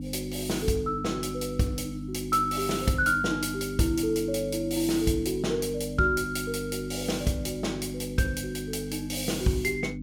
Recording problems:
electrical hum; 50 Hz, harmonics up to 300 Hz, SNR 7 dB

